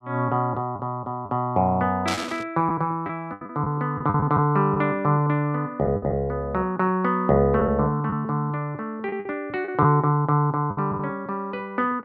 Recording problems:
lost packets; 6% of the sound replaced, filled with the last packet
burst of static; at 2 s; peak 0 dB vs average level

